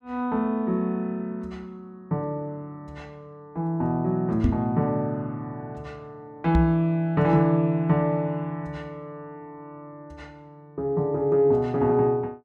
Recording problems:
microphone thump; at 4.5 s and at 6.5 s; peak +6 dB vs average level

